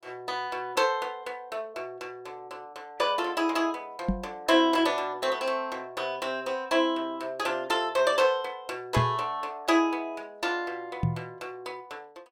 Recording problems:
microphone bump; at 4 s, at 9 s and at 11 s; peak +5 dB vs average level

